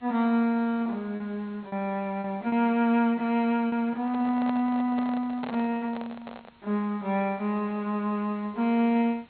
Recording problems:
low-pass filter; nothing above 4.3 kHz
background hiss; SNR 30 dB
lost packets; 2% of the sound replaced, filled with repeated pitch periods
microphone handling noise; from 4 to 6.5 s; peak -6 dB vs average level

